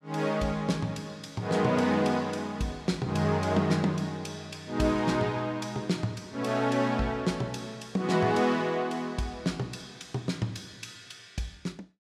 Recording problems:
none

